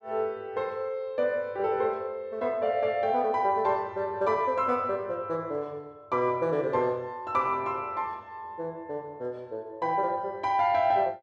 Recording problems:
none

